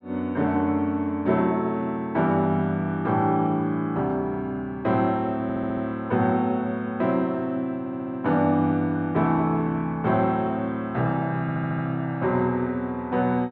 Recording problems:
stutter; at 5.5 s, at 8 s and at 11 s

